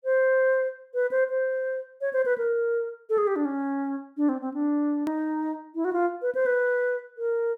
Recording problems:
hard cut with a click; at 5 s

